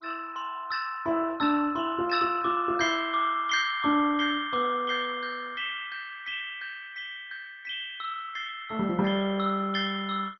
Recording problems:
codec artefacts; MP2, then MP2, log-spectral distance 5 dB, nothing above 4.9 kHz

